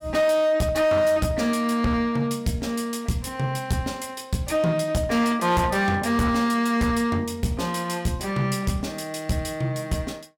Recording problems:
distortion; hard clipping, signal-to-distortion ratio 12 dB

